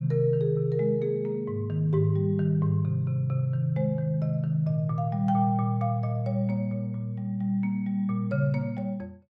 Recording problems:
none

